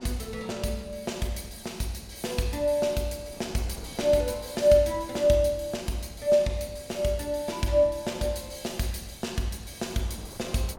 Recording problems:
wind on the microphone; below 690 Hz, SNR 23 dB

